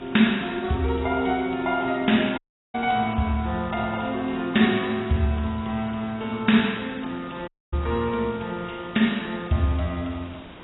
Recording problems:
lossy compression; AAC, log-spectral distance 9 dB, nothing above 3.9 kHz
background hiss; SNR 19 dB
audio cutting out; at 2.5 s and at 7.5 s

